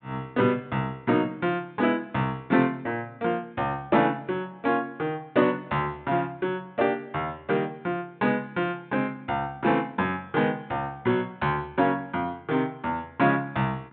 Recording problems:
treble missing; nothing above 4 kHz

